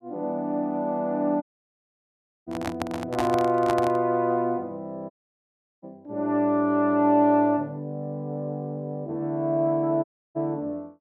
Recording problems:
dropout; at 1.5 s for 1 s, at 5 s for 0.5 s and at 10 s
handling noise; from 2.5 to 4 s; peak +1 dB vs average level

